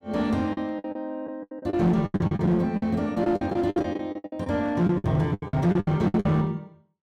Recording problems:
distortion; hard clipping, uneven, signal-to-distortion ratio 10 dB
packet loss; 20% of the sound replaced, filled with the last packet

